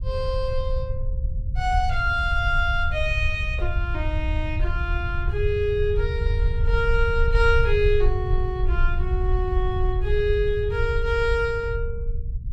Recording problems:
low-frequency rumble; below 72 Hz, SNR 1 dB

